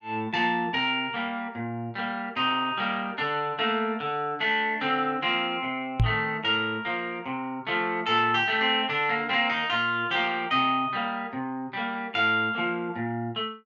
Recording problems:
microphone bump; at 6 s; peak +6 dB vs average level

